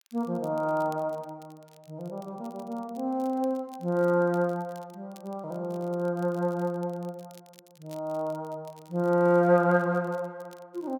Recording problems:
crackle; vinyl, SNR 29 dB

